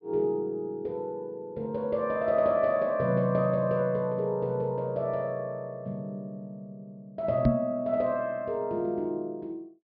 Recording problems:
treble cut off; nothing above 5.5 kHz
knock on the microphone; at 7.5 s; peak +9 dB vs average level

